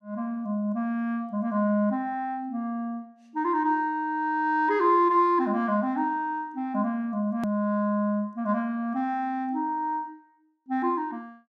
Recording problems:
edit click; at 7.5 s

